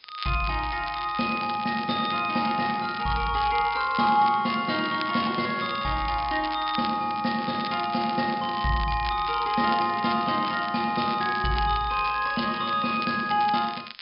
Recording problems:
treble missing; nothing above 5.5 kHz
background hiss; SNR 27 dB
crackling; vinyl, SNR 14 dB

